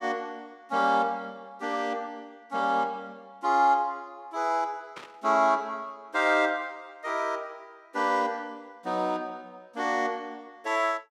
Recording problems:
static burst; at 5 s; peak -10 dB vs average level

